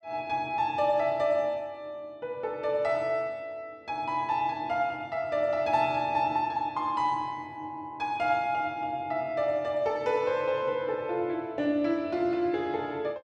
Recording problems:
none

